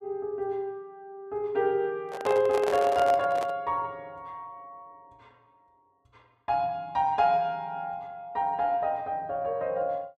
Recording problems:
microphone handling noise; from 2 to 3.5 s; peak -1 dB vs average level

